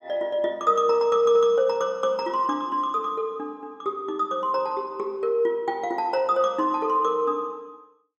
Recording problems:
none

